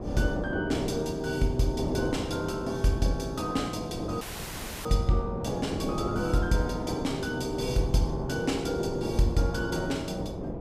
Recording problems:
electrical hum; 60 Hz, harmonics up to 600 Hz, SNR 16 dB
wind on the microphone; below 490 Hz, SNR 6 dB
dropout; at 4 s for 0.5 s

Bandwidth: 14.5 kHz